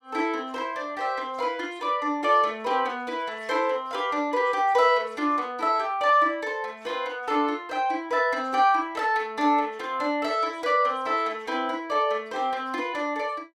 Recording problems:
none

